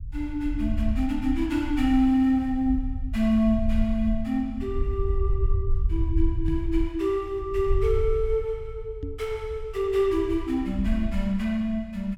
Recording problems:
rumble; below 66 Hz, SNR 6 dB
microphone bump; at 6.5 s and at 9 s; peak -2 dB vs average level

